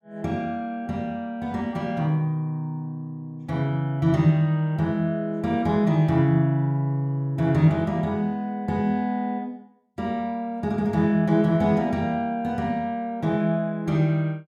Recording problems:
none

